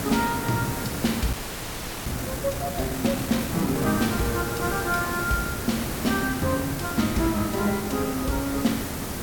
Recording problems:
background hiss; slope -5 dB per octave, SNR 4 dB
audio freezing; at 1.5 s for 0.5 s

